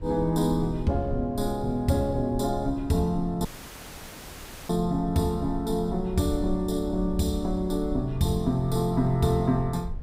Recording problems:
rumble; below 66 Hz, SNR 12 dB
dropout; at 3.5 s for 1 s

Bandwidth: 15.5 kHz